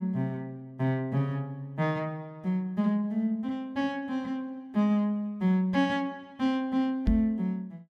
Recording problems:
microphone bump; at 7 s; peak +6 dB vs average level

